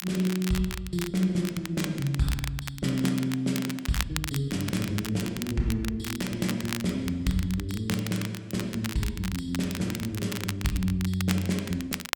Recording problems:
crackling; vinyl, SNR 9 dB

